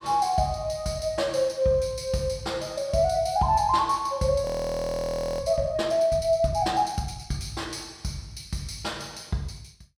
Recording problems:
audio freezing; at 4.5 s for 1 s

